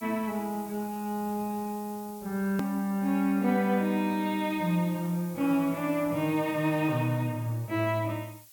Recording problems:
background hiss; slope +4 dB per octave, SNR 19 dB
edit click; at 2.5 s

